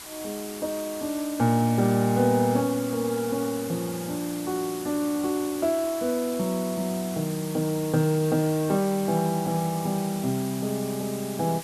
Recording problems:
background hiss; slope 0 dB per octave, SNR 12 dB

